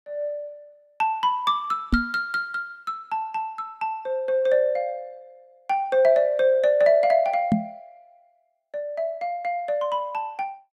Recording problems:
microphone thump; at 2 s and at 7.5 s; peak +6 dB vs average level

